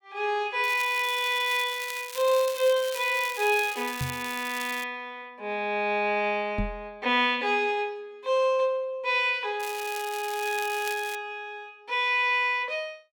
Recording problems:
crackling; from 0.5 to 5 s and from 9.5 to 11 s; loose cable, SNR 12 dB
microphone bump; at 4 s and at 6.5 s; peak 0 dB vs average level

